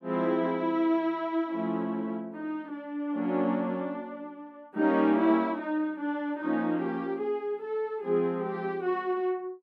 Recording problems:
none

